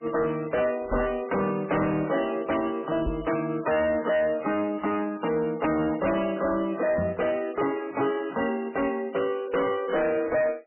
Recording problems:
lossy codec; MP3, log-spectral distance 4 dB, nothing above 3 kHz
distorted audio; hard clipping, signal-to-distortion ratio 8 dB
microphone thump; at 1 s, at 3 s and at 7 s; peak +1 dB vs average level

